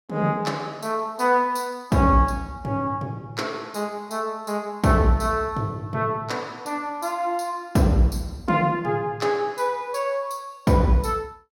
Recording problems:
none

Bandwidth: 16.5 kHz